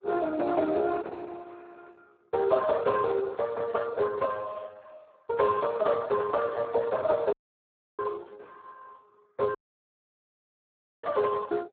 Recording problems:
lossy compression; Opus, then Speex, log-spectral distance 4 dB, nothing above 4 kHz
audio cutting out; at 7.5 s for 0.5 s and at 9.5 s for 1.5 s

